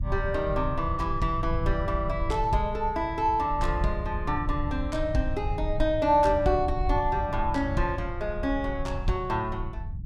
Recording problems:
low-frequency rumble; below 84 Hz, SNR 6 dB

